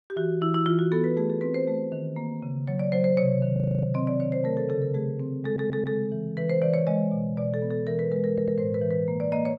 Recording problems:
audio freezing; at 3.5 s
stutter; at 5.5 s and at 8.5 s

